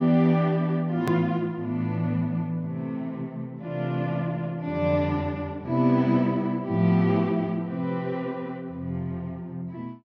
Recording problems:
treble missing; nothing above 6.5 kHz
edit click; at 1 s

